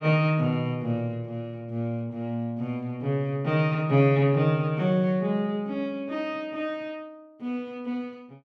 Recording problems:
none

